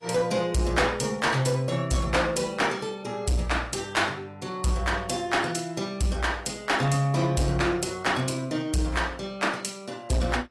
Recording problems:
codec artefacts; AAC, log-spectral distance 3 dB
distortion; hard clipping, signal-to-distortion ratio 11 dB

